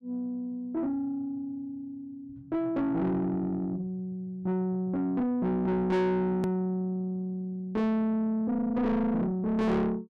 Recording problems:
distorted audio; soft clipping, signal-to-distortion ratio 7 dB
click at an edit; at 6.5 s

